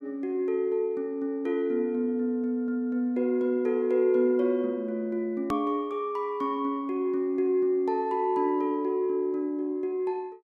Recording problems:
edit click; at 5.5 s

